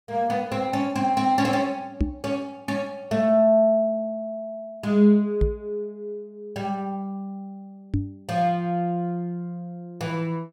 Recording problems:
microphone thump; at 2 s, at 5.5 s and at 8 s; peak +4 dB vs average level

